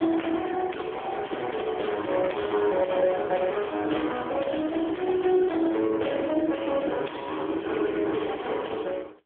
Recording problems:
telephone audio; 260 Hz to 3.3 kHz, AMR-NB
distortion; soft clipping, signal-to-distortion ratio 11 dB

